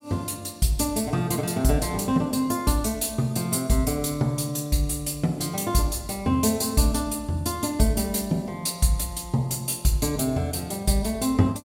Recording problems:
none

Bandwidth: 16 kHz